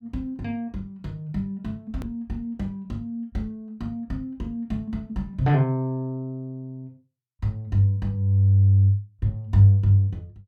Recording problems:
click at an edit; at 2 s

